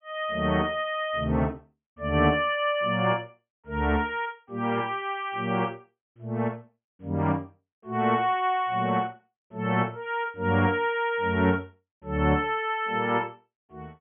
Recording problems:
treble cut off; nothing above 3.3 kHz

